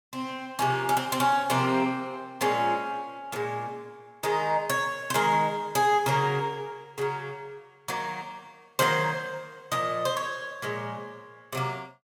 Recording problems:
none

